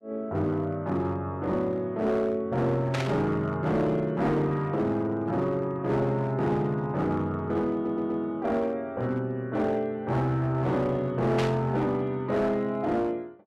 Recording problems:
distorted audio; hard clipping, uneven, signal-to-distortion ratio 11 dB
burst of static; at 3 s and at 11 s; peak -1 dB vs average level
stutter; at 7.5 s

